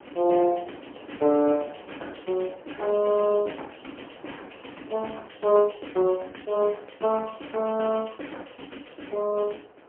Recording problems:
phone line; 240 Hz to 3.2 kHz, AMR-NB, then MP3
wind on the microphone; below 980 Hz, SNR 24 dB

